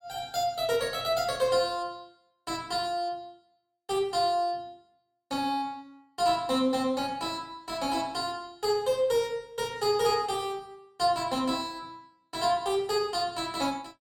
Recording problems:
none

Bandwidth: 17 kHz